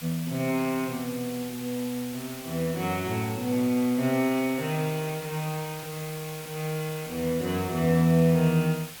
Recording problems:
background hiss; slope 0 dB per octave, SNR 13 dB

